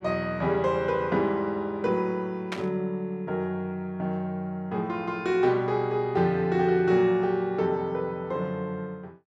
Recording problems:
static burst; at 2.5 s; peak -2 dB vs average level

